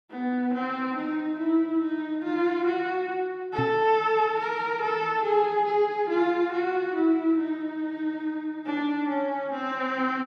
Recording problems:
knock on the microphone; at 3.5 s; peak 0 dB vs average level

